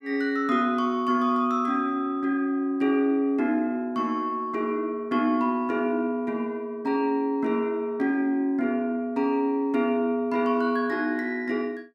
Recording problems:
none

